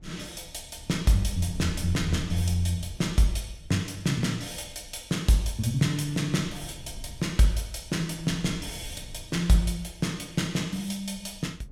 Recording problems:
wind on the microphone; below 98 Hz, SNR 17 dB

